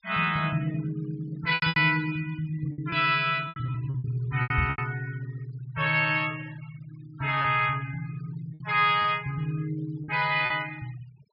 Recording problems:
low-pass filter; nothing above 5.5 kHz
noise reduction artefacts; signal-to-artefact ratio 23 dB
lost packets; 7% of the sound replaced, filled with repeated pitch periods
knock on the microphone; at 4.5 s; peak +3 dB vs average level

